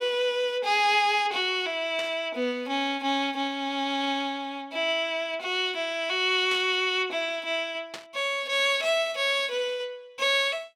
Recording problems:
static burst; at 2 s, at 6.5 s and at 8 s; peak -7 dB vs average level

